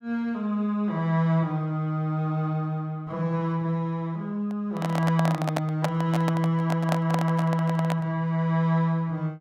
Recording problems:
handling noise; from 4.5 to 8 s; peak +3 dB vs average level

